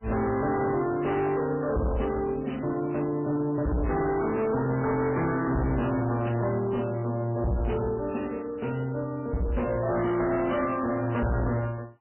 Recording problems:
codec artefacts; MP3, log-spectral distance 5 dB, nothing above 2.9 kHz
distorted audio; soft clipping, signal-to-distortion ratio 7 dB

